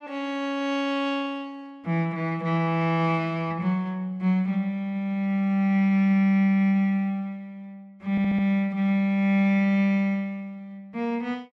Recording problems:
stutter; at 8 s

